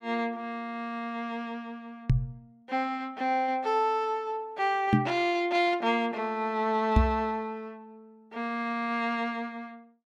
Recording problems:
knock on the microphone; at 2 s, at 5 s and at 7 s; peak +10 dB vs average level

